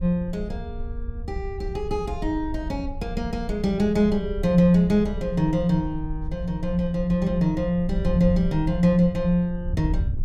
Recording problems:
wind noise; below 72 Hz, SNR 10 dB

